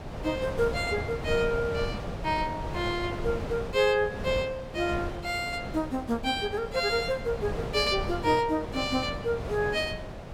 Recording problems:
wind noise; below 600 Hz, SNR 8 dB

